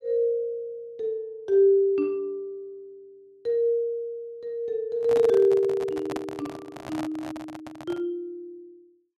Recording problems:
handling noise; from 5 to 8 s; peak -5 dB vs average level

